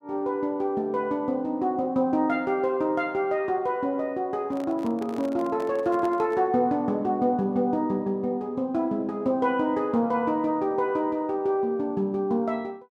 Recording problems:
microphone handling noise; from 4.5 to 6.5 s; peak -9 dB vs average level

